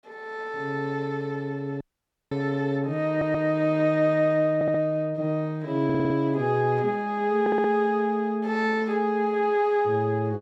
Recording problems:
dropout; at 2 s for 0.5 s
audio stuttering; 4 times, first at 3 s

